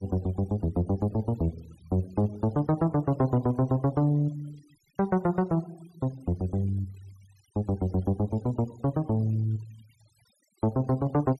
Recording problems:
noise reduction artefacts; signal-to-artefact ratio 27 dB

